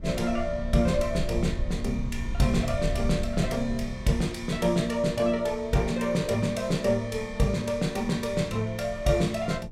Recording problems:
rumble; below 84 Hz, SNR 11 dB

